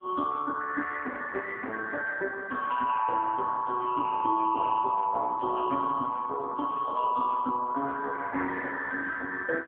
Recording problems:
telephone audio; 260 Hz to 2 kHz, AMR-NB

